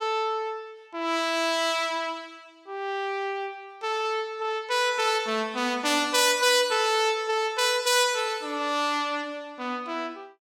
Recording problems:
none

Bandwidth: 17 kHz